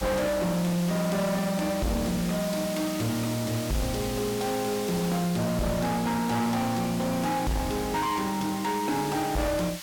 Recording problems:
distortion; soft clipping, signal-to-distortion ratio 7 dB
hiss; SNR 10 dB

